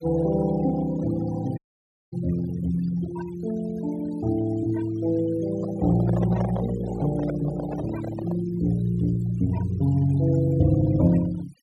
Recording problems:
noise reduction artefacts; signal-to-artefact ratio 18 dB
dropout; at 1.5 s for 0.5 s
microphone handling noise; from 5.5 to 8.5 s; peak -3 dB vs average level

